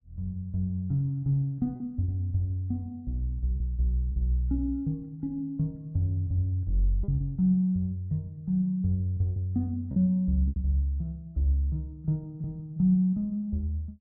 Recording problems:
packet loss; 3% of the sound replaced, filled with repeated pitch periods

